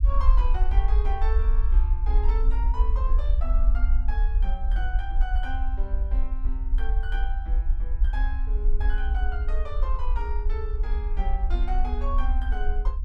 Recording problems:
low-frequency rumble; below 50 Hz, SNR -11 dB

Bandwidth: 14 kHz